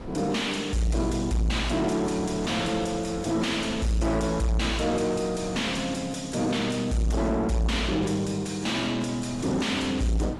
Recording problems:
lossy codec; AAC, log-spectral distance 3 dB, nothing above 11 kHz
distorted audio; soft clipping, signal-to-distortion ratio 7 dB
wind on the microphone; below 580 Hz, SNR 15 dB

